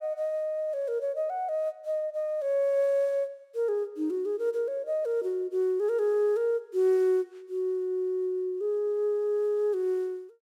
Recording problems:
none

